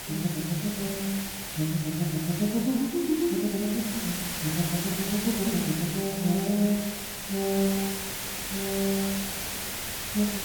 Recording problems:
background hiss; slope -1 dB per octave, SNR 3 dB

